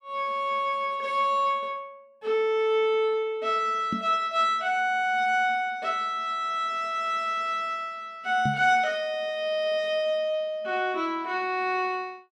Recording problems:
microphone thump; at 4 s and at 8.5 s; peak 0 dB vs average level

